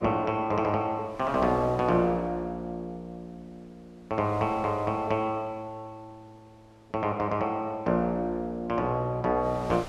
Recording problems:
wind noise; below 1.7 kHz, SNR 24 dB

